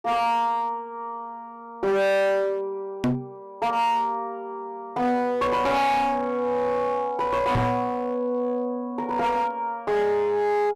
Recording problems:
distortion; hard clipping, uneven, signal-to-distortion ratio 7 dB
knock on the microphone; at 3 s and at 7.5 s; peak +4 dB vs average level

